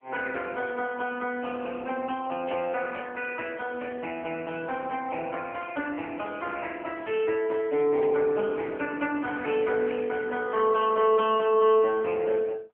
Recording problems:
phone line; 170 Hz to 3.2 kHz, AMR-NB
burst of static; at 2.5 s, at 6.5 s and at 8 s; peak -9 dB vs average level

